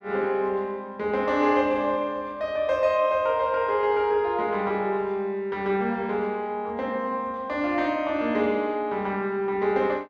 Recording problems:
none

